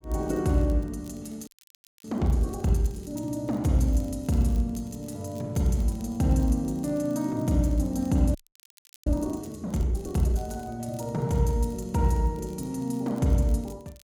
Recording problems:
crackling; vinyl, SNR 28 dB
frozen audio; at 1.5 s for 0.5 s and at 8.5 s for 0.5 s

